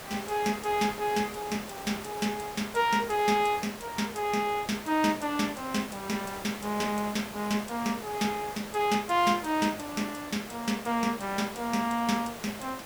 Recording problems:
hiss; slope -4 dB per octave, SNR 12 dB

